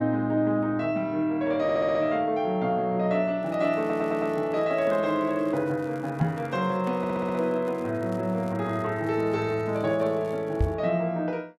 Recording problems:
audio stuttering; at 1.5 s, at 4 s and at 7 s
crackling; from 3.5 to 11 s; loose cable, SNR 29 dB
microphone bump; at 6 s and at 11 s; peak +5 dB vs average level

